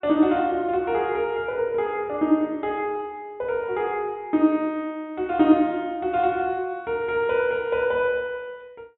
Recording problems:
treble missing; nothing above 3.8 kHz

